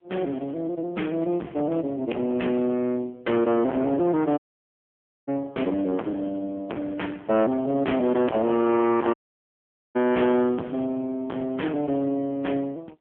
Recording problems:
telephone audio; 220 Hz to 3.2 kHz, AMR-NB
distortion; hard clipping, signal-to-distortion ratio 4 dB
audio cutting out; at 4.5 s for 1 s and at 9 s for 1 s

